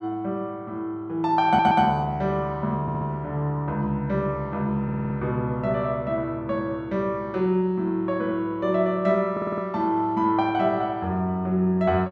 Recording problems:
audio stuttering; 4 times, first at 1.5 s

